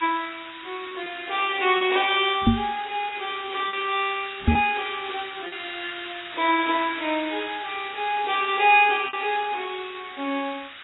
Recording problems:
lossy codec; AAC, log-spectral distance 20 dB, nothing above 3.2 kHz
hiss; SNR 13 dB
lost packets; 3% of the sound replaced, filled with repeated pitch periods
microphone thump; at 2.5 s and at 4.5 s; peak +9 dB vs average level

